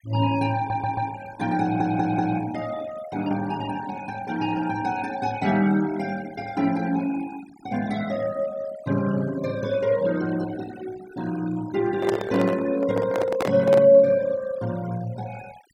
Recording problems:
noise reduction artefacts; signal-to-artefact ratio 18 dB
stutter; at 0.5 s and at 1.5 s
handling noise; from 12 to 14 s; peak +1 dB vs average level

